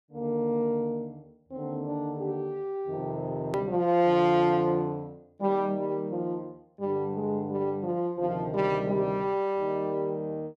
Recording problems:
edit click; at 3.5 s

